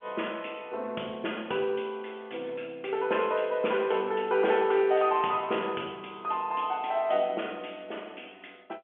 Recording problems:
phone line; 260 Hz to 3.4 kHz, G.711

